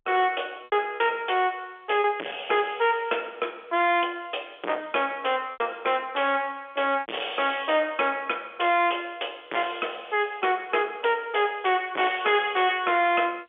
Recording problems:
telephone audio; 280 Hz to 3.5 kHz, G.711
distortion; hard clipping, signal-to-distortion ratio 3 dB
lost packets; 2% of the sound replaced, filled with repeated pitch periods

